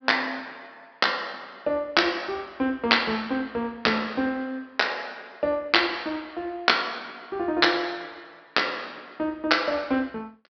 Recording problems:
low-pass filter; nothing above 5.5 kHz

